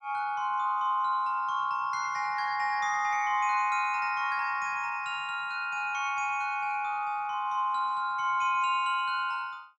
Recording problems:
none

